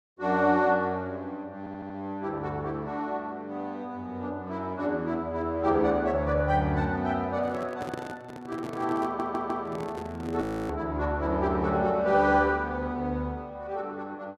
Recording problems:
audio stuttering; at 1.5 s and at 9 s
microphone handling noise; from 7.5 to 11 s; peak -3 dB vs average level
audio freezing; at 10 s

